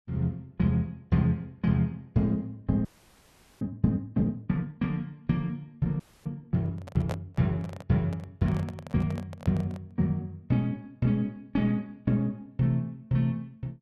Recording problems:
frozen audio; at 3 s for 1 s and at 6 s
handling noise; from 6.5 to 10 s; peak -2 dB vs average level

